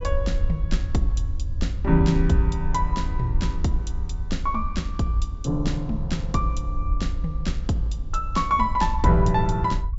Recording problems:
low-pass filter; nothing above 8 kHz
rumble; below 64 Hz, SNR 3 dB

